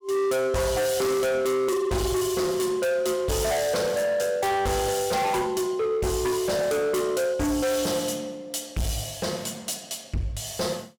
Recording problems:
distorted audio; hard clipping, signal-to-distortion ratio 6 dB

